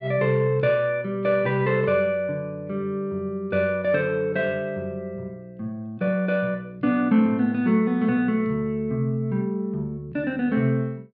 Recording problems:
none

